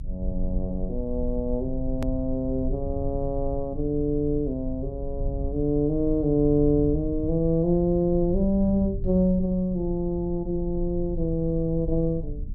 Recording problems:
rumble; below 68 Hz, strongest tone 24 Hz, SNR 9 dB
hard cut with a click; at 2 s

